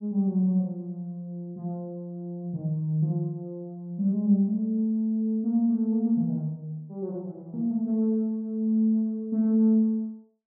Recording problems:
none

